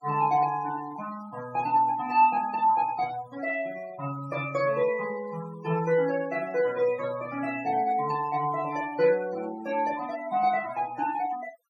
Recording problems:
noise reduction artefacts; signal-to-artefact ratio 18 dB

